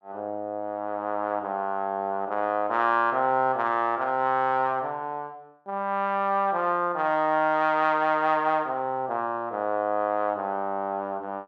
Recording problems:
none

